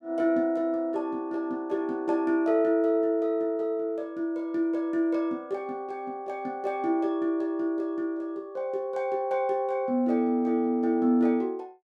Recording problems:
none

